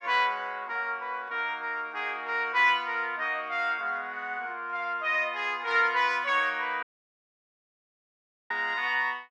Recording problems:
dropout; at 7 s for 1.5 s

